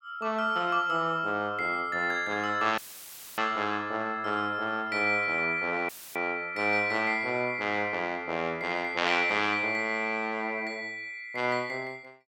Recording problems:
audio cutting out; at 3 s for 0.5 s and at 6 s; filled with static

